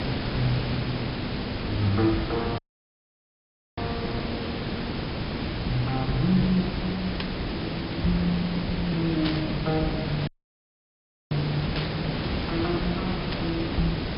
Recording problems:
treble missing; nothing above 5.5 kHz
electrical hum; 50 Hz, harmonics up to 500 Hz, SNR 30 dB
hiss; slope -4 dB per octave, SNR 2 dB
audio cutting out; at 2.5 s for 1 s and at 10 s for 1 s
static burst; 4 times, first at 7 s; peak +2 dB vs average level

